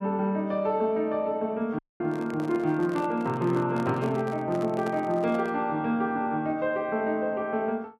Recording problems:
audio cutting out; at 2 s
microphone handling noise; from 2 to 5.5 s; peak -7 dB vs average level

